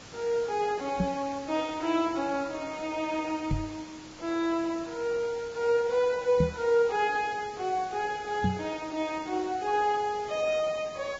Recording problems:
lossy codec; Vorbis, log-spectral distance 5 dB, nothing above 6.9 kHz
background hiss; slope -3 dB per octave, SNR 17 dB
knock on the microphone; 4 times, first at 1 s; peak +6 dB vs average level

